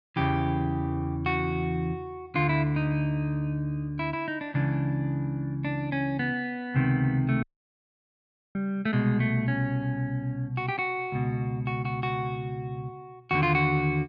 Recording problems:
dropout; at 7.5 s for 1 s

